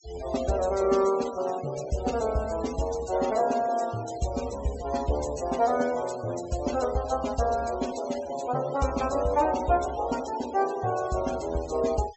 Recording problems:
low-pass filter; nothing above 7.9 kHz
noise reduction artefacts; signal-to-artefact ratio 16 dB

